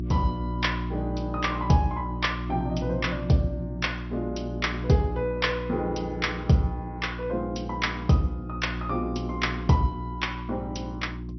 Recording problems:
lossy codec; MP2, log-spectral distance 2 dB, nothing above 5.8 kHz
electrical hum; 60 Hz, harmonics up to 360 Hz, SNR 6 dB

